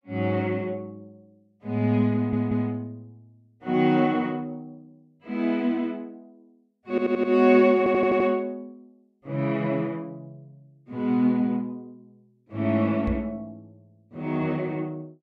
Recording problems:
stutter; at 2 s, at 7 s and at 8 s
microphone thump; at 13 s; peak -2 dB vs average level

